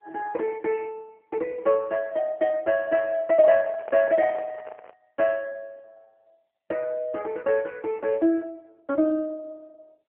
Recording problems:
telephone audio; 220 Hz to 3.1 kHz, AMR-NB
handling noise; from 3.5 to 5 s; peak -12 dB vs average level

